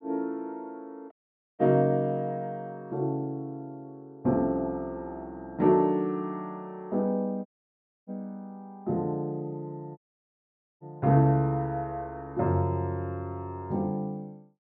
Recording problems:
dropout; at 1 s, at 7.5 s for 0.5 s and at 10 s for 1 s

